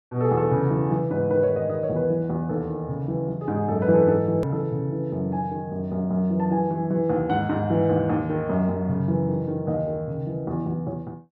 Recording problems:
edit click; at 4.5 s

